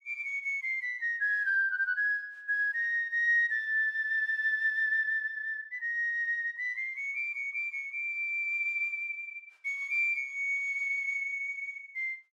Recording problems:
none

